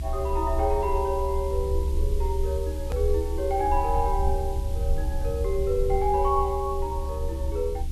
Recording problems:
hum; 60 Hz, harmonics up to 360 Hz, SNR 18 dB
hiss; slope +2 dB per octave, SNR 21 dB
rumble; below 68 Hz, strongest tone 26 Hz, SNR 2 dB
click at an edit; at 3 s

